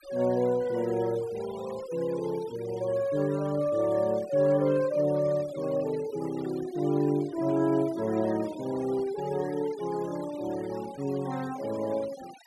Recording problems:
noise reduction artefacts; signal-to-artefact ratio 19 dB

